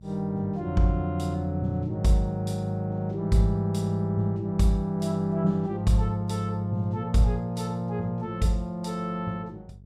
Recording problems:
hum; 50 Hz, harmonics up to 450 Hz, SNR 23 dB

